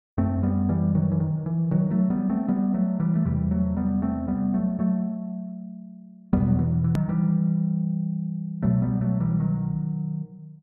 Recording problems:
edit click; at 7 s

